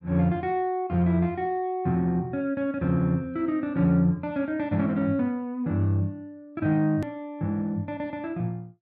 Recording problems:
hard cut with a click; at 7 s

